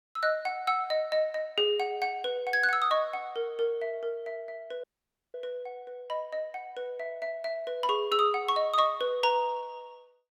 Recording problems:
audio cutting out; at 5 s for 0.5 s

